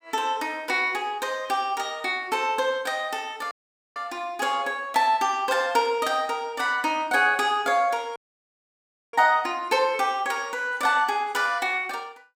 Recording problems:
dropout; at 3.5 s and at 8 s for 1 s

